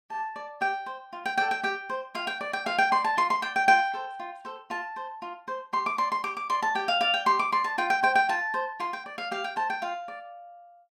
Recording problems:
none

